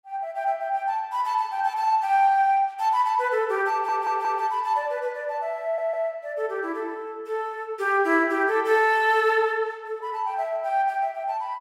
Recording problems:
stutter; at 3.5 s and at 5.5 s

